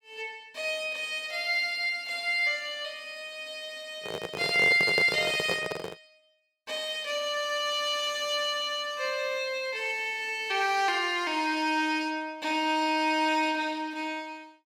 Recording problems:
microphone handling noise; from 4 to 6 s; peak +2 dB vs average level

